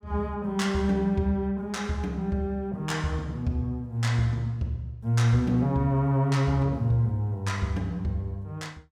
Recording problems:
none

